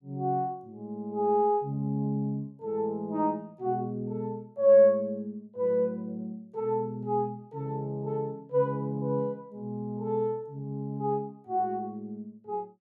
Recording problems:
none

